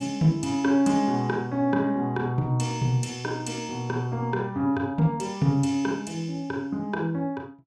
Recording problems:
none

